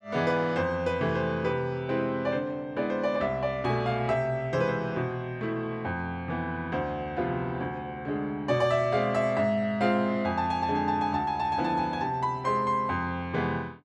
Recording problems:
none

